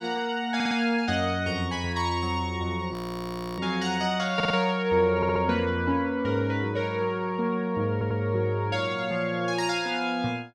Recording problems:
audio stuttering; 4 times, first at 0.5 s
audio freezing; at 3 s for 0.5 s

